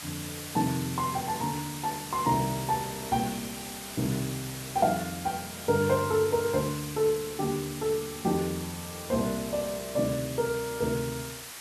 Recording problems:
background hiss; slope 0 dB per octave, SNR 9 dB

